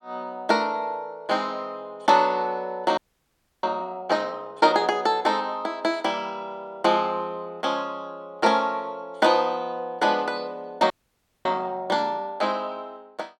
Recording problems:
audio freezing; at 3 s for 0.5 s and at 11 s for 0.5 s

